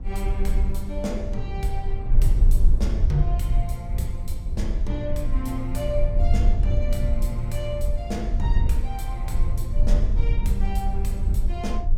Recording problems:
low-frequency rumble; below 56 Hz, SNR -6 dB

